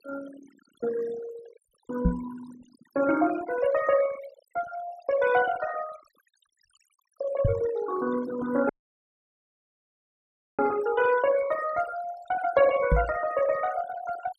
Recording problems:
denoising artefacts; signal-to-artefact ratio 13 dB
knock on the microphone; at 2 s, at 7.5 s and at 13 s; peak +7 dB vs average level
dropout; at 8.5 s for 2 s

